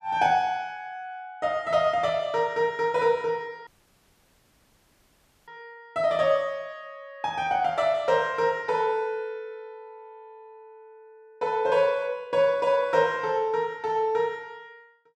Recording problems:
dropout; at 3.5 s for 2 s

